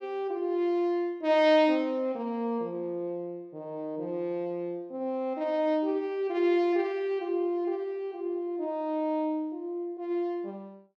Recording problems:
none

